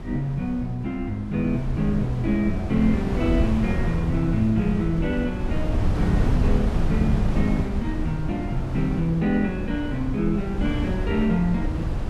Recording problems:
wind noise; below 140 Hz, SNR 3 dB

